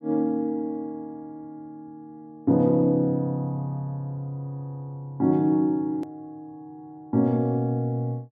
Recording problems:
edit click; at 6 s

